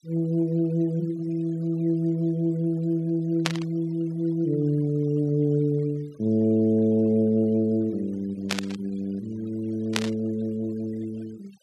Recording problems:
denoising artefacts; signal-to-artefact ratio 27 dB
burst of static; at 3.5 s, at 8.5 s and at 10 s; peak +4 dB vs average level

